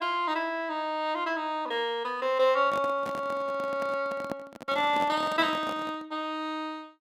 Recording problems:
handling noise; from 2.5 to 6 s; peak -2 dB vs average level

